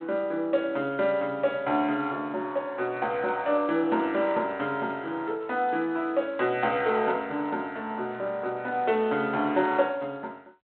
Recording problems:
phone line; 260 Hz to 3.9 kHz, G.726

